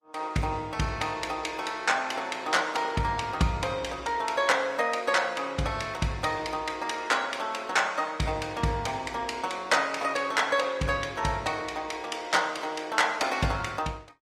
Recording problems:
lossy codec; Opus, log-spectral distance 3 dB

